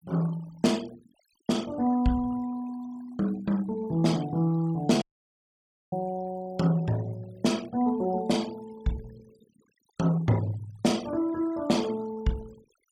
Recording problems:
noise reduction artefacts; signal-to-artefact ratio 21 dB
audio cutting out; at 5 s for 1 s

